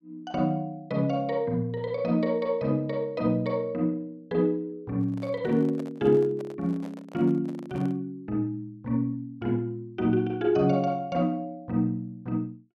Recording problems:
handling noise; from 5 to 8 s; peak -11 dB vs average level

